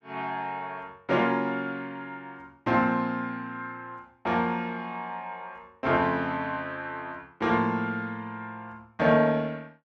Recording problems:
none

